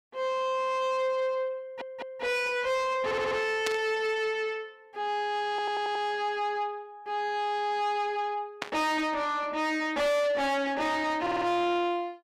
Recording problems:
distorted audio; soft clipping, signal-to-distortion ratio 7 dB
audio stuttering; 4 times, first at 1.5 s
static burst; at 3.5 s and at 8.5 s; peak +1 dB vs average level

